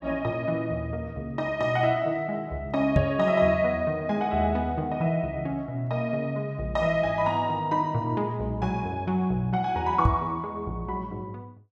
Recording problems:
knock on the microphone; at 3 s and at 10 s; peak +7 dB vs average level

